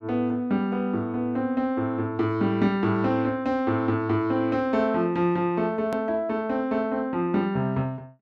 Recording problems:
click at an edit; at 6 s

